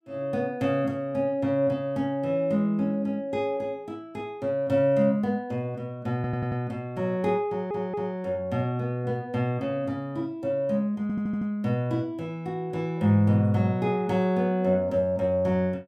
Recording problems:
audio stuttering; at 6 s, at 7.5 s and at 11 s

